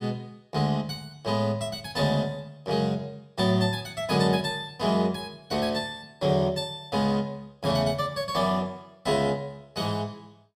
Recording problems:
none

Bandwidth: 15.5 kHz